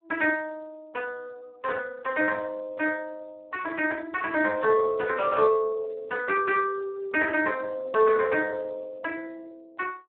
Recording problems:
telephone audio; 260 Hz to 2.9 kHz, Speex

